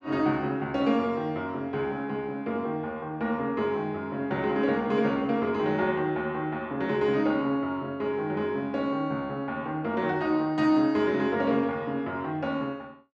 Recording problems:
none

